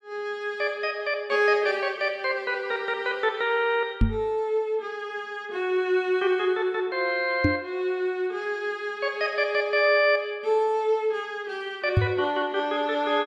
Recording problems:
microphone bump; at 4 s, at 7.5 s and at 12 s; peak +7 dB vs average level

